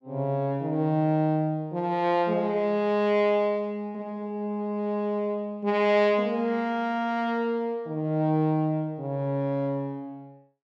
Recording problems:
none

